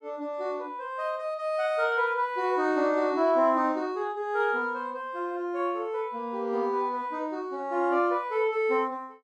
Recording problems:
none

